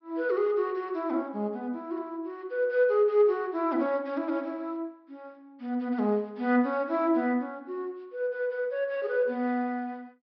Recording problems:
treble missing; nothing above 5.5 kHz

